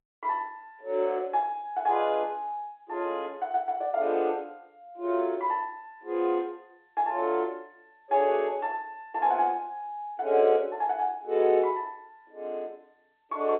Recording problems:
telephone audio; 280 Hz to 3.9 kHz, G.711

